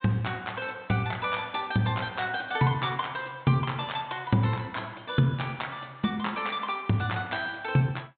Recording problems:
treble missing; nothing above 4 kHz

